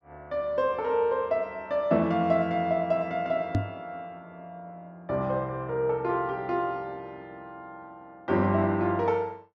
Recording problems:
microphone bump; at 3.5 s; peak +4 dB vs average level

